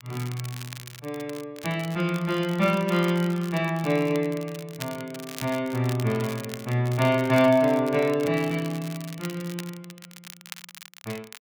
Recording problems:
crackle; vinyl, SNR 16 dB

